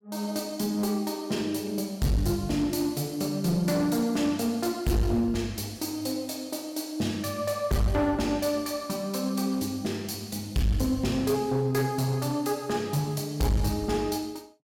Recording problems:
distortion; hard clipping, uneven, signal-to-distortion ratio 10 dB

